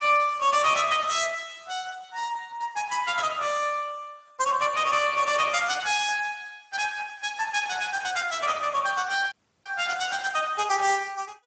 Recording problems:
lossy compression; Speex, log-spectral distance 7 dB, nothing above 7.8 kHz
audio cutting out; at 9.5 s

